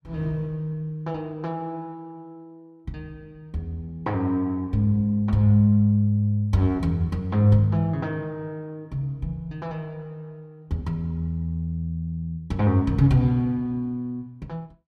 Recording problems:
none

